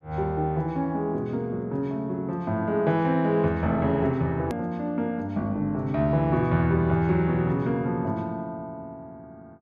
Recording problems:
click at an edit; at 4.5 s

